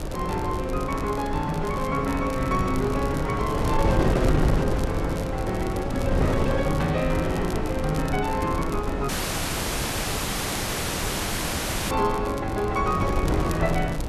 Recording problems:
wind on the microphone; below 400 Hz, SNR 1 dB
crackling; vinyl, SNR 17 dB
audio cutting out; at 9 s for 3 s

